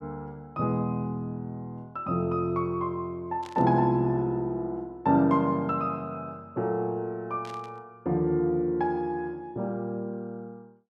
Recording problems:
burst of static; at 3.5 s and at 7.5 s; peak -13 dB vs average level

